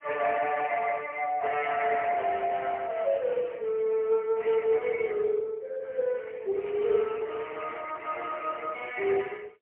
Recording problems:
telephone audio; 340 Hz to 3.1 kHz, AMR-NB, then MP3

